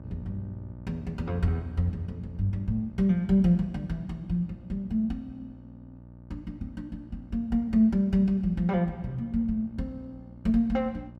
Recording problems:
electrical hum; 60 Hz, harmonics up to 900 Hz, SNR 19 dB

